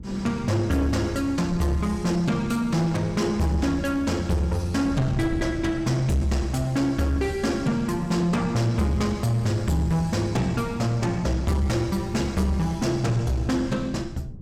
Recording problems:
distortion; soft clipping, signal-to-distortion ratio 10 dB
wind noise; below 180 Hz, SNR 14 dB

